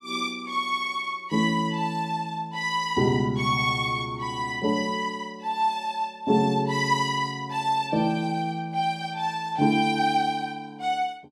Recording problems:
none

